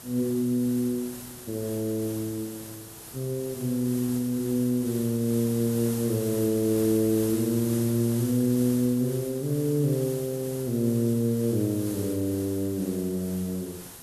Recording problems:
hiss; SNR 12 dB

